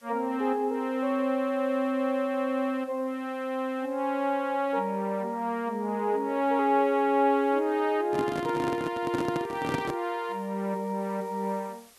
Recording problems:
background hiss; slope -1 dB per octave, SNR 30 dB
handling noise; from 8 to 10 s; peak +2 dB vs average level

